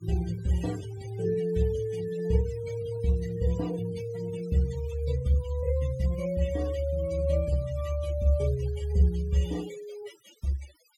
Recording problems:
denoising artefacts; signal-to-artefact ratio 17 dB

